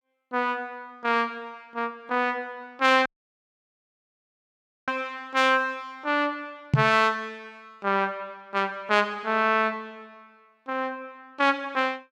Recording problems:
dropout; at 3 s for 2 s
microphone thump; at 6.5 s; peak +8 dB vs average level

